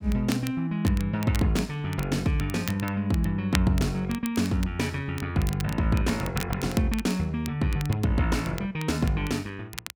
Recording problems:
crackling; vinyl, SNR 14 dB

